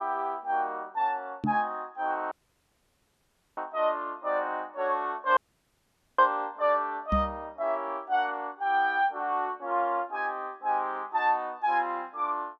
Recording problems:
microphone bump; at 1.5 s and at 7 s; peak +3 dB vs average level
dropout; at 2.5 s for 1.5 s and at 5.5 s for 1 s

